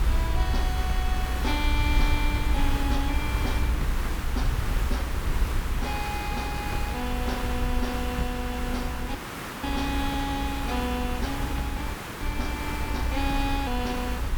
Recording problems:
hum; 50 Hz, harmonics up to 900 Hz, SNR 12 dB
hiss; SNR 2 dB
low-frequency rumble; below 62 Hz, SNR -1 dB
audio cutting out; at 9 s and at 12 s

